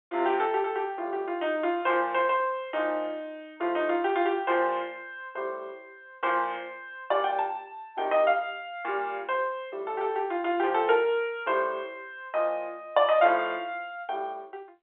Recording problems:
phone line; 300 Hz to 3.7 kHz, G.711

